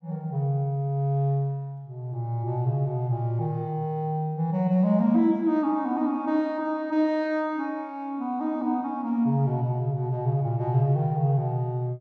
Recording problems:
none

